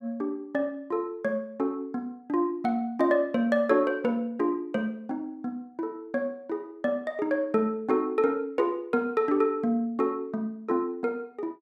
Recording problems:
none

